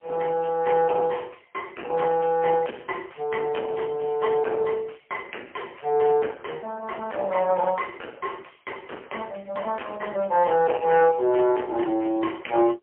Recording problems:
phone line; 260 Hz to 2.8 kHz, AMR-NB, then MP3
distorted audio; soft clipping, signal-to-distortion ratio 11 dB

